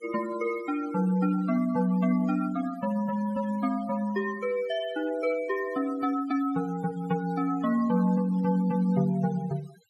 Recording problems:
noise reduction artefacts; signal-to-artefact ratio 18 dB

